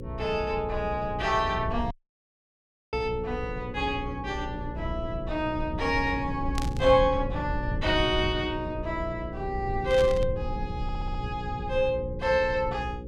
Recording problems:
hum; 60 Hz, harmonics up to 540 Hz, SNR 11 dB
low-frequency rumble; below 110 Hz, SNR 9 dB
dropout; at 2 s for 1 s
static burst; at 6.5 s and at 10 s; peak -3 dB vs average level
stutter; at 11 s

